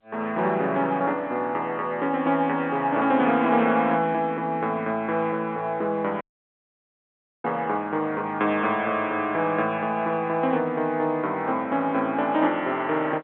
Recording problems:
phone line; 220 Hz to 3.6 kHz, G.711
audio cutting out; at 6 s for 1 s

